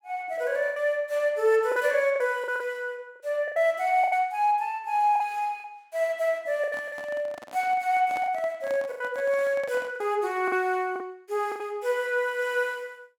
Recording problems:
lost packets; 8% of the sound replaced, filled with the last packet
handling noise; from 6.5 to 10 s; peak -8 dB vs average level

